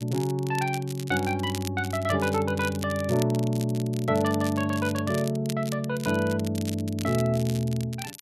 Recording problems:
crackle; vinyl, SNR 14 dB

